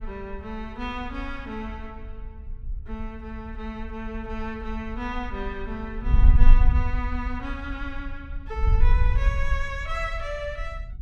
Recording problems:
wind on the microphone; below 54 Hz, SNR -7 dB

